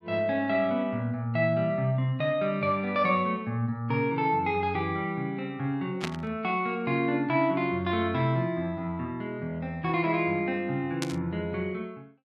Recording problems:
static burst; at 6 s and at 11 s; peak 0 dB vs average level

